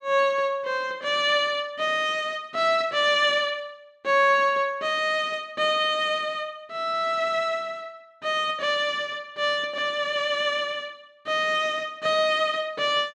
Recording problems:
none

